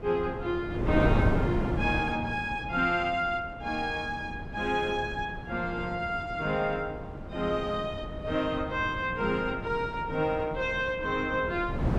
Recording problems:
wind noise; below 350 Hz, SNR 5 dB

